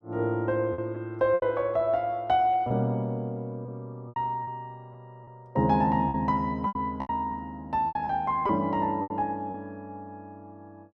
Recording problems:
packet loss; 8% of the sound replaced, filled with repeated pitch periods

